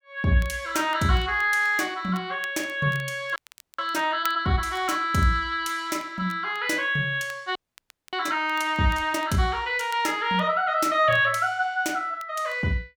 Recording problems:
crackling; vinyl, SNR 25 dB
audio freezing; at 3.5 s and at 7.5 s for 0.5 s

